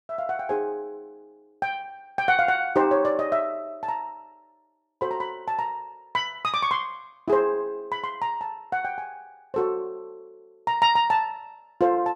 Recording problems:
none

